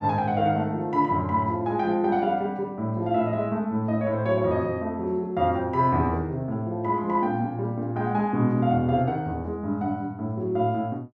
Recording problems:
none

